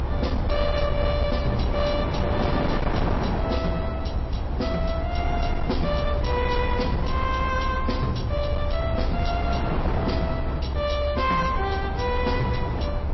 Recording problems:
codec artefacts; MP3, log-spectral distance 3 dB, nothing above 5.7 kHz
distorted audio; hard clipping, signal-to-distortion ratio 12 dB
rumble; below 80 Hz, SNR 2 dB
wind on the microphone; below 660 Hz, SNR 2 dB

